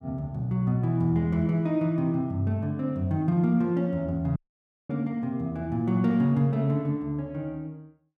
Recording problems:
dropout; at 4.5 s for 0.5 s

